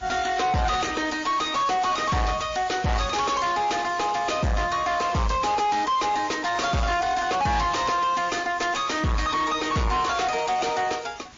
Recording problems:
lossy codec; MP3, then MP3, log-spectral distance 6 dB
distorted audio; soft clipping, signal-to-distortion ratio 6 dB
background hiss; slope -2 dB per octave, SNR 24 dB

